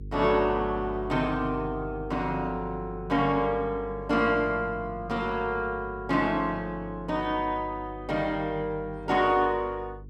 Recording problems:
hum; 50 Hz, harmonics up to 450 Hz, SNR 15 dB

